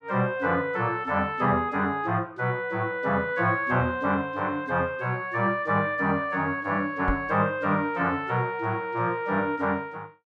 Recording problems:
microphone bump; at 7 s; peak 0 dB vs average level

